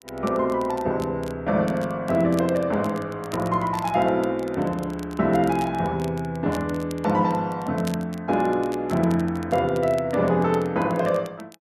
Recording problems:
crackle; vinyl, SNR 22 dB

